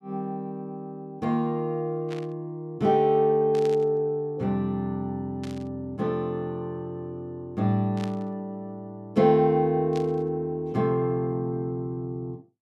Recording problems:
static burst; 5 times, first at 2 s; peak -10 dB vs average level

